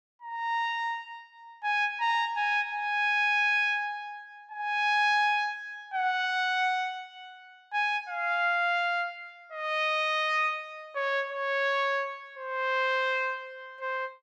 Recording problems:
none

